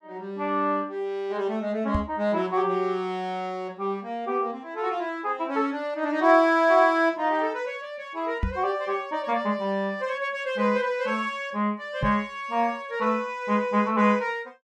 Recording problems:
microphone thump; at 2 s, at 8.5 s and at 12 s; peak +2 dB vs average level

